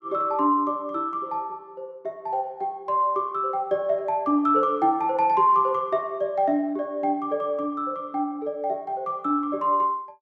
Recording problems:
none

